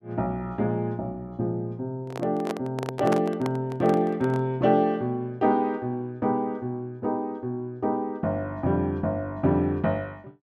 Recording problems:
handling noise; from 2 to 4.5 s; peak +1 dB vs average level

